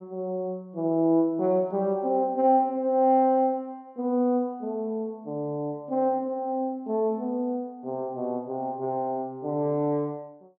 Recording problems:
none

